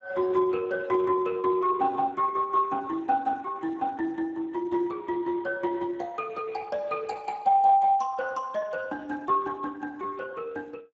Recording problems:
lossy compression; Speex, log-spectral distance 3 dB

